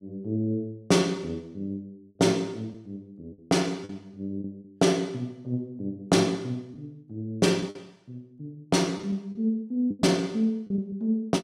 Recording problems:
lost packets; 4% of the sound replaced, filled with the last packet

